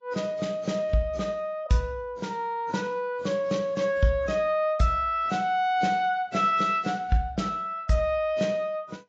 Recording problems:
codec artefacts; AAC, log-spectral distance 2 dB, nothing above 7.3 kHz

